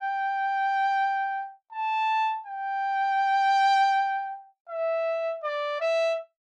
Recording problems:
none

